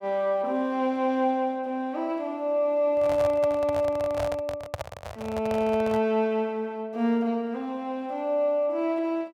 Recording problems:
microphone handling noise; from 3 to 6 s; peak -2 dB vs average level

